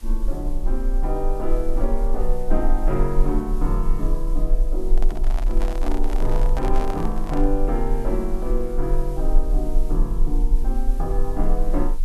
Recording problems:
hiss; slope 0 dB per octave, SNR 22 dB
low-frequency rumble; below 32 Hz, strongest tone 20 Hz, SNR -2 dB
handling noise; from 5 to 7.5 s; peak -1 dB vs average level

